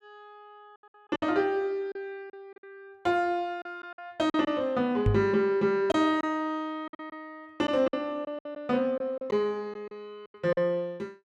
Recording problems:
lost packets; 9% of the sound replaced, filled with silence
knock on the microphone; at 5 s; peak +6 dB vs average level

